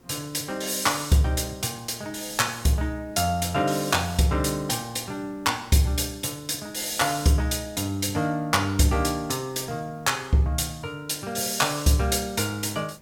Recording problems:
background hiss; SNR 28 dB

